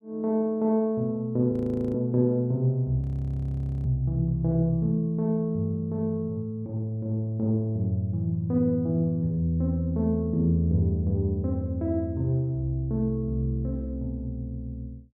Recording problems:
frozen audio; at 1.5 s and at 3 s for 1 s

